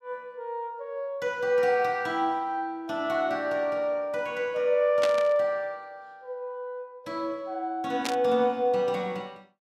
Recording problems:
static burst; at 5 s and at 8 s; peak +1 dB vs average level

